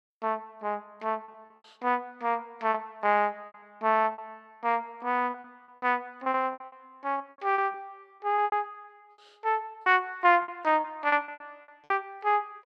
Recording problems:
lost packets; 12% of the sound replaced, filled with repeated pitch periods

